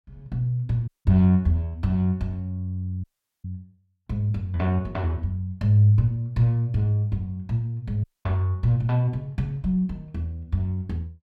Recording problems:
audio cutting out; at 1 s, at 3 s and at 8 s

